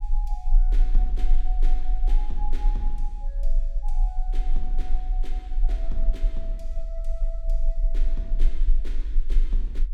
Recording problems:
low-frequency rumble; below 34 Hz, strongest tone 18 Hz, SNR -15 dB

